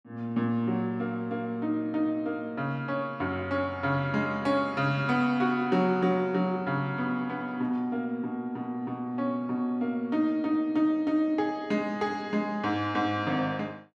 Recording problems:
none

